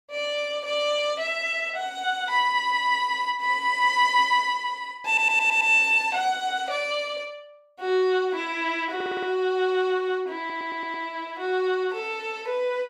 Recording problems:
stutter; at 5 s, at 9 s and at 10 s

